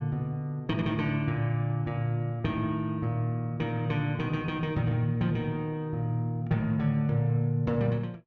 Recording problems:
none

